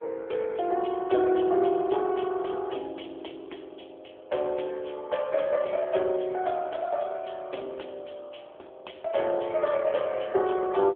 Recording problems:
telephone audio; 280 Hz to 3.6 kHz, AMR-NB

